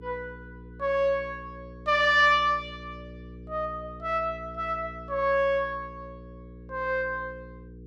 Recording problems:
electrical hum; 60 Hz, harmonics up to 480 Hz, SNR 19 dB

